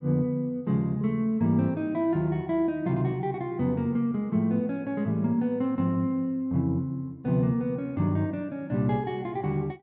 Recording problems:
none

